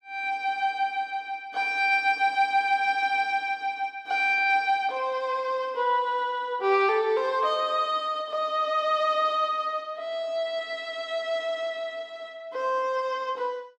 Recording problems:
none

